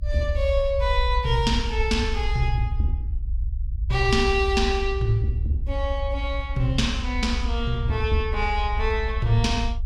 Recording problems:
low-frequency rumble; below 70 Hz, SNR 3 dB

